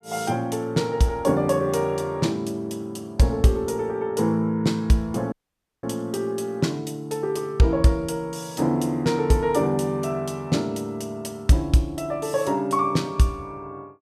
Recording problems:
audio cutting out; at 5.5 s for 0.5 s

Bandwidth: 15 kHz